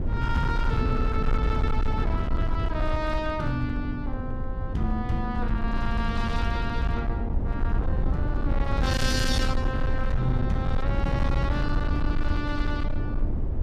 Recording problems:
distorted audio; hard clipping, uneven, signal-to-distortion ratio 11 dB
rumble; below 94 Hz, SNR -2 dB

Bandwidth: 15 kHz